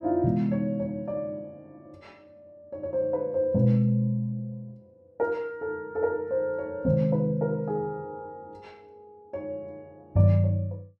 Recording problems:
none

